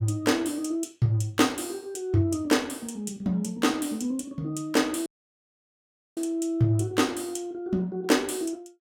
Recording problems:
audio cutting out; at 5 s for 1 s

